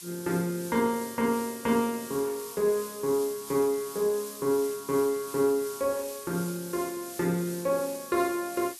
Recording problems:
background hiss; slope +4 dB per octave, SNR 12 dB

